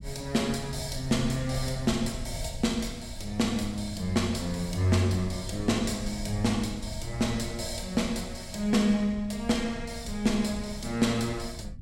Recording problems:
rumble; below 110 Hz, SNR 12 dB

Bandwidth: 17 kHz